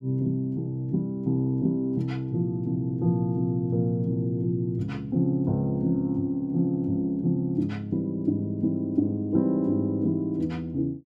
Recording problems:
none

